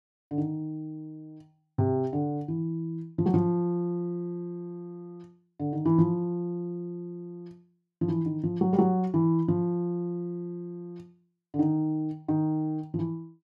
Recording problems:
none

